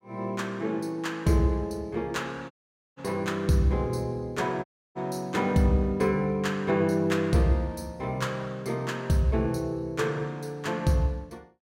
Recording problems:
audio cutting out; at 2.5 s and at 4.5 s

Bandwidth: 16 kHz